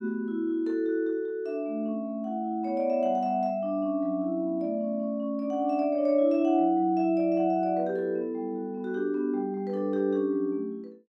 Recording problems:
none

